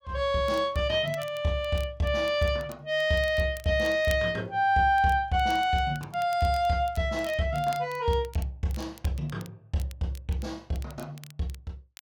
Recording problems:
crackle; vinyl, SNR 23 dB

